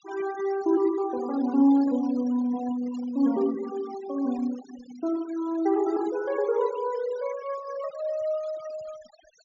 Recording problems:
low-pass filter; nothing above 7.3 kHz
denoising artefacts; signal-to-artefact ratio 19 dB
static burst; at 3 s; peak -34 dB vs average level

